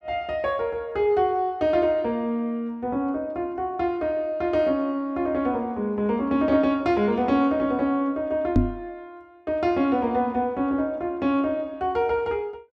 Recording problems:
microphone bump; at 8.5 s; peak +8 dB vs average level

